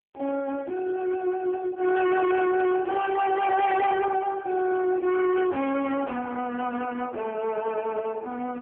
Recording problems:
phone line; 370 Hz to 2.3 kHz, AMR-NB
distorted audio; hard clipping, uneven, signal-to-distortion ratio 6 dB

